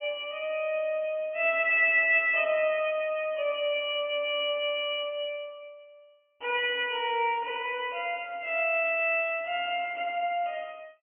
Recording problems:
treble cut off; nothing above 3.1 kHz

